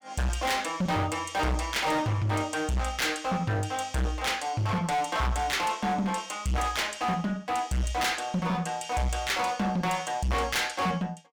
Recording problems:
distortion; hard clipping, uneven, signal-to-distortion ratio 6 dB

